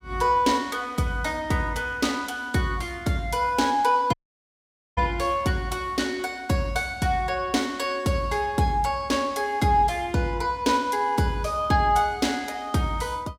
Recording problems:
dropout; at 4 s for 1 s

